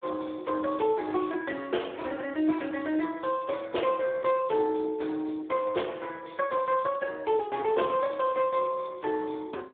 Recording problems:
telephone audio; 280 Hz to 3.5 kHz, Speex

